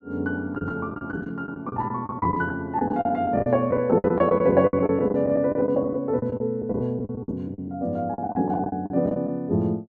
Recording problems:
lost packets; 17% of the sound replaced, filled with the last packet

